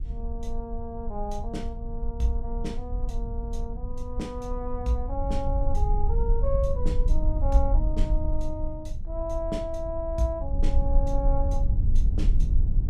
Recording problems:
low-frequency rumble; below 54 Hz, SNR -4 dB

